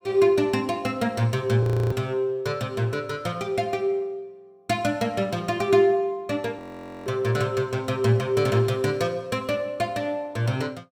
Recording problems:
frozen audio; at 1.5 s and at 6.5 s

